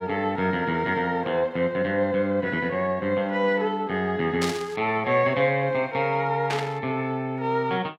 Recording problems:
static burst; at 4.5 s and at 6.5 s; peak -1 dB vs average level

